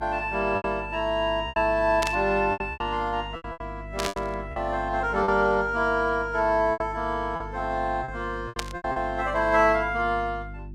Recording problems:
electrical hum; 50 Hz, harmonics up to 350 Hz, SNR 15 dB
packet loss; 9% of the sound replaced, filled with repeated pitch periods
static burst; at 2 s, at 4 s and at 8.5 s; peak +1 dB vs average level

